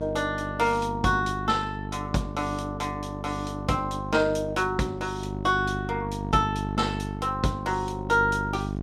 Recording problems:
hum; 50 Hz, harmonics up to 800 Hz, SNR 7 dB

